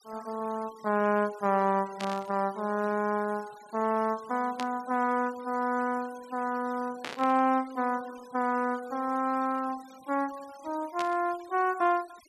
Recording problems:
denoising artefacts; signal-to-artefact ratio 22 dB
static burst; 4 times, first at 2 s; peak -3 dB vs average level

